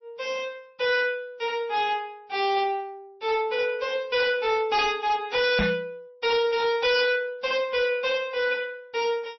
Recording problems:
lossy codec; MP3, log-spectral distance 2 dB, nothing above 4.9 kHz
distorted audio; hard clipping, signal-to-distortion ratio 8 dB
microphone bump; at 5.5 s; peak +4 dB vs average level

